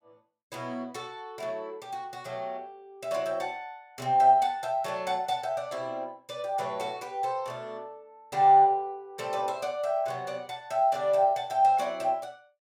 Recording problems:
none

